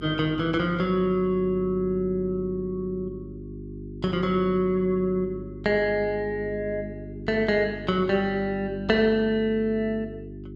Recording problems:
electrical hum; 50 Hz, harmonics up to 400 Hz, SNR 13 dB

